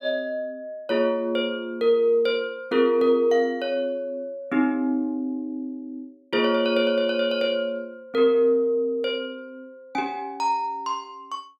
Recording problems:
none

